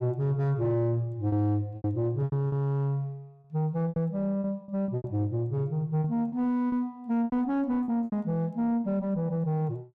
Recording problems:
distortion; soft clipping, signal-to-distortion ratio 10 dB
packet loss; 9% of the sound replaced, filled with repeated pitch periods

